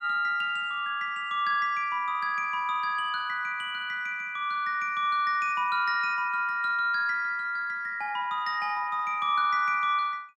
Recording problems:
none

